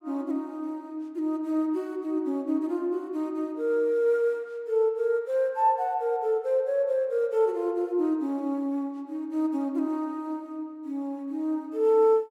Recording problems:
none

